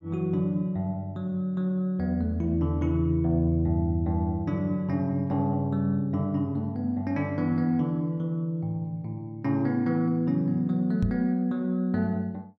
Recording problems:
microphone thump; at 11 s; peak +3 dB vs average level

